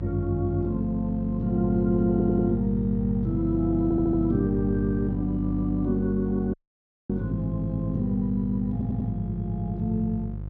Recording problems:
hum; 50 Hz, harmonics up to 500 Hz, SNR 7 dB
audio stuttering; at 2 s, at 4 s and at 8.5 s
audio cutting out; at 6.5 s for 0.5 s

